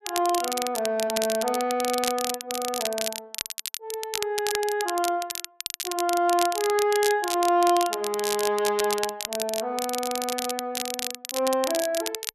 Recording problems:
crackling; vinyl, SNR 5 dB

